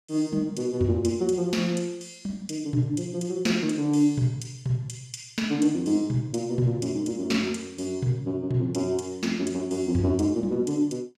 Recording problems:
none

